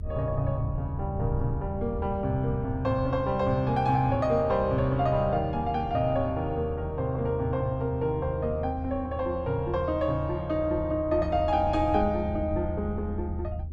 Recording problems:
rumble; below 90 Hz, strongest tone 78 Hz, SNR 8 dB

